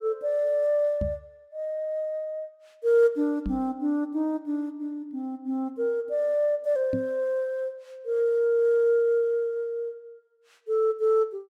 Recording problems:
microphone bump; at 1 s, at 3.5 s and at 7 s; peak 0 dB vs average level

